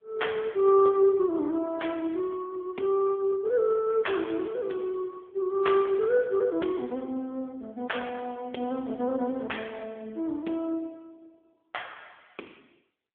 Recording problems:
phone line; 220 Hz to 3.5 kHz, AMR-NB

